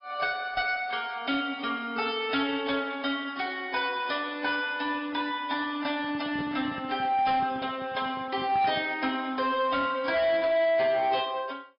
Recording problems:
treble missing; nothing above 5.2 kHz
lossy codec; AAC, log-spectral distance 3 dB
distortion; soft clipping, signal-to-distortion ratio 12 dB
microphone handling noise; from 6 to 9 s; peak -7 dB vs average level

